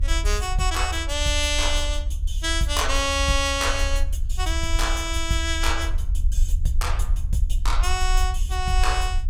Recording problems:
rumble; below 68 Hz, SNR 2 dB

